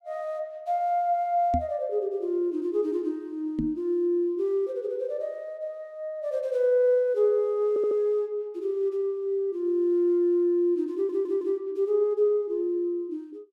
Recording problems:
knock on the microphone; at 1.5 s and at 3.5 s; peak +1 dB vs average level
audio stuttering; at 7.5 s and at 11 s

